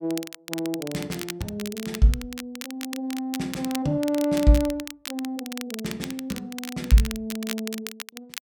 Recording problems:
crackle; vinyl, SNR 10 dB

